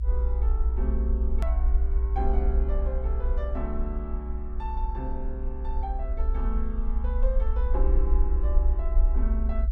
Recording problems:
low-frequency rumble; below 58 Hz, SNR -9 dB
click at an edit; at 1.5 s

